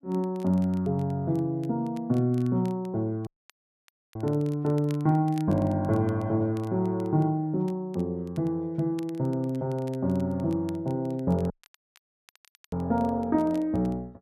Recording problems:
crackle; vinyl, SNR 29 dB
audio cutting out; at 3.5 s for 1 s and at 12 s for 1 s

